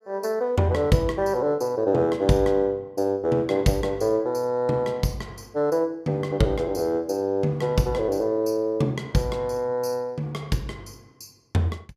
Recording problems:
none

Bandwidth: 15.5 kHz